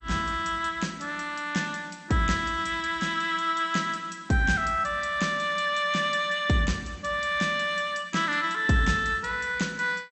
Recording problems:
codec artefacts; MP2, log-spectral distance 5 dB, nothing above 8 kHz

